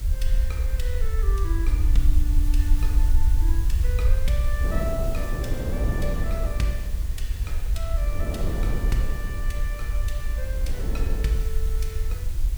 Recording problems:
hiss; slope 0 dB per octave, SNR 9 dB
rumble; below 58 Hz, SNR -8 dB
wind noise; below 260 Hz, SNR -2 dB

